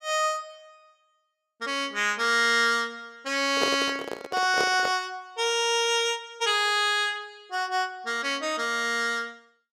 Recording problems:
handling noise; from 3.5 to 5 s; peak +1 dB vs average level

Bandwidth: 15.5 kHz